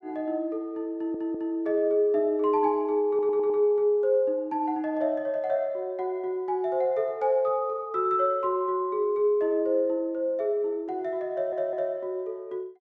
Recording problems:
stutter; at 1 s, at 3 s and at 11 s

